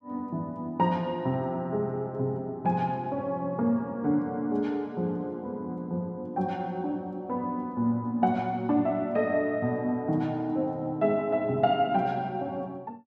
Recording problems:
none

